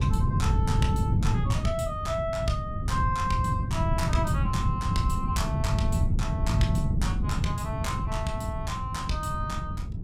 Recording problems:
wind on the microphone; below 150 Hz, SNR -3 dB

